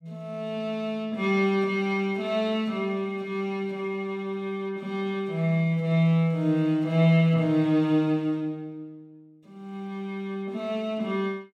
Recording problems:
none

